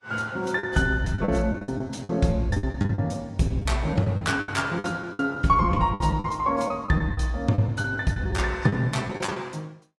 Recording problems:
codec artefacts; AAC, log-spectral distance 2 dB, nothing above 11 kHz
lost packets; 14% of the sound replaced, filled with the last packet

